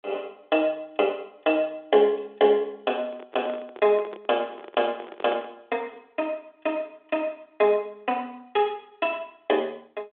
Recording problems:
phone line; 280 Hz to 3.6 kHz, G.726
handling noise; from 3 to 5.5 s; peak -5 dB vs average level

